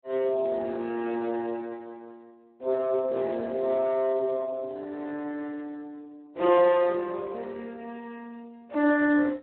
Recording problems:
telephone audio; 260 Hz to 3.8 kHz, Speex

